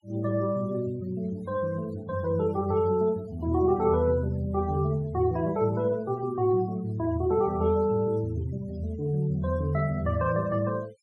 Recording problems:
noise reduction artefacts; signal-to-artefact ratio 26 dB

